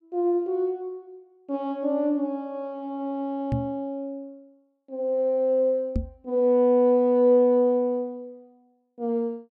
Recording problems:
microphone thump; at 3.5 s and at 6 s; peak +1 dB vs average level

